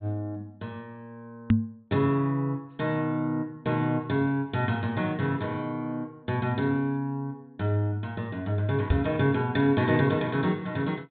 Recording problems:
treble missing; nothing above 4 kHz
microphone thump; at 1.5 s and at 9 s; peak +10 dB vs average level

